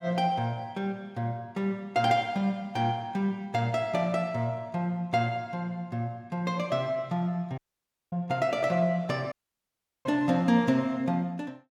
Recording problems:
audio cutting out; at 7.5 s for 0.5 s and at 9.5 s for 0.5 s

